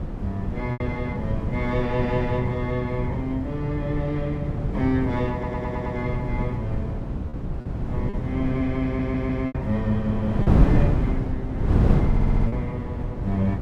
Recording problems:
wind on the microphone; below 200 Hz, SNR -1 dB
packet loss; 3% of the sound replaced, filled with repeated pitch periods
stutter; at 5.5 s, at 9 s and at 12 s

